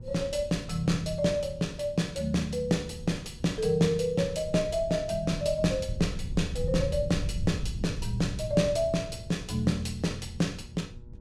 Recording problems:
hum; 60 Hz, harmonics up to 960 Hz, SNR 25 dB
rumble; below 110 Hz, SNR 11 dB

